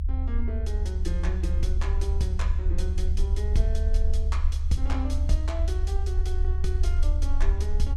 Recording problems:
low-frequency rumble; below 70 Hz, SNR -9 dB

